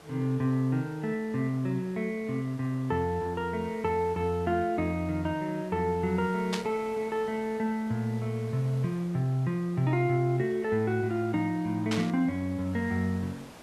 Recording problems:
background hiss; slope -5 dB per octave, SNR 20 dB
burst of static; at 6.5 s and at 12 s; peak +1 dB vs average level

